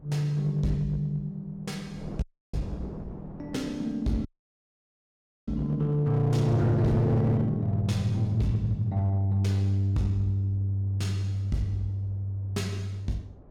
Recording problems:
distortion; hard clipping, uneven, signal-to-distortion ratio 10 dB
wind noise; below 410 Hz, SNR 19 dB
dropout; at 2 s and at 4.5 s for 1 s

